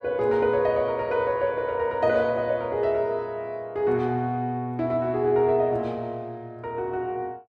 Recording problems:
none

